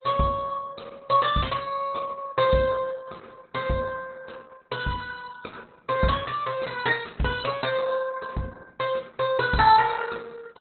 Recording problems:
codec artefacts; Opus, log-spectral distance 5 dB, nothing above 4 kHz

